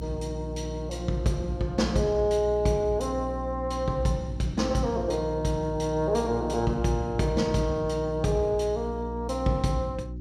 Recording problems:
hum; 60 Hz, harmonics up to 360 Hz, SNR 9 dB

